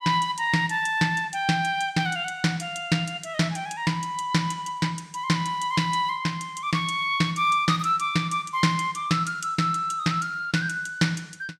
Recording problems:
none

